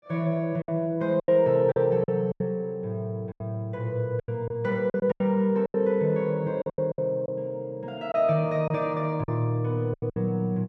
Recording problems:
packet loss; 11% of the sound replaced, filled with silence

